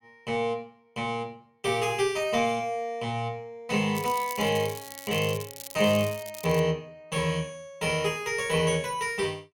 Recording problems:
crackle; from 4 to 6.5 s; loose cable, SNR 13 dB

